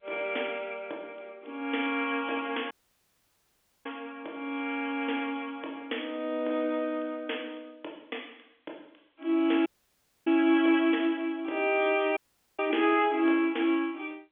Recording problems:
phone line; 260 Hz to 3.5 kHz, G.711
audio cutting out; at 2.5 s for 1 s, at 9.5 s for 0.5 s and at 12 s

